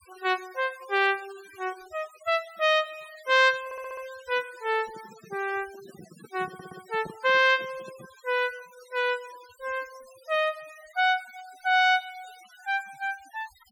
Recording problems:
denoising artefacts; signal-to-artefact ratio 22 dB
audio stuttering; at 3.5 s and at 6.5 s
microphone handling noise; from 5 to 8 s; peak -10 dB vs average level

